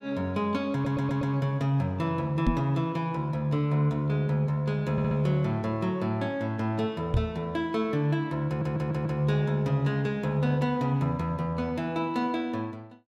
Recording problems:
audio stuttering; at 0.5 s, at 5 s and at 8.5 s
microphone bump; at 2.5 s and at 7 s; peak +5 dB vs average level

